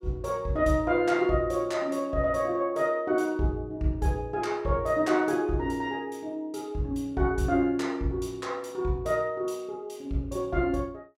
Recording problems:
none

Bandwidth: 16 kHz